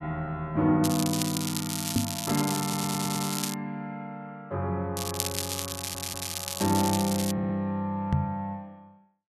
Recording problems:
crackle; from 1 to 3.5 s and from 5 to 7.5 s; loose cable, SNR 3 dB
microphone thump; at 2 s and at 8 s; peak +7 dB vs average level
stutter; at 2.5 s, at 6 s and at 7.5 s

